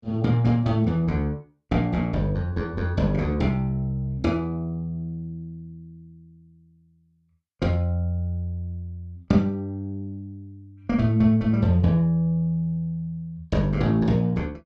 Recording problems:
none

